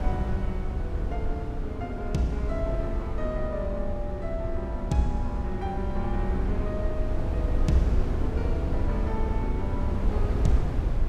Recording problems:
wind on the microphone; below 86 Hz, SNR -2 dB

